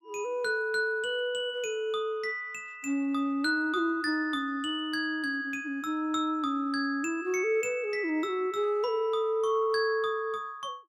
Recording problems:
none

